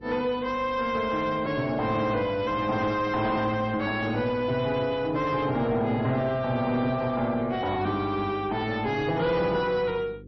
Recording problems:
lossy codec; MP3, log-spectral distance 2 dB, nothing above 5.8 kHz
distorted audio; soft clipping, signal-to-distortion ratio 10 dB
hum; 50 Hz, harmonics up to 500 Hz, SNR 21 dB

